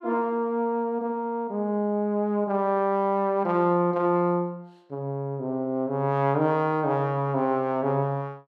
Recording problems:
none

